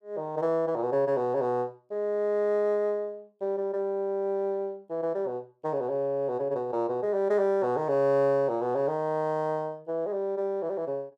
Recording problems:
none

